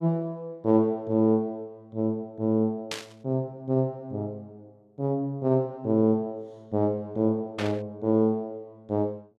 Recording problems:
burst of static; at 3 s and at 7.5 s; peak -1 dB vs average level

